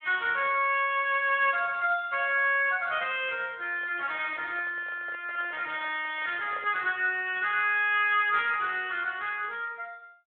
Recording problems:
telephone audio; 320 Hz to 3.5 kHz, Speex
handling noise; from 3.5 to 7 s; peak -13 dB vs average level

